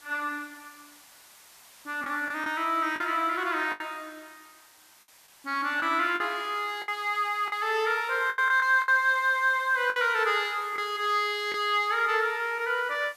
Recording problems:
background hiss; SNR 25 dB
packet loss; 6% of the sound replaced, filled with the last packet

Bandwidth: 14.5 kHz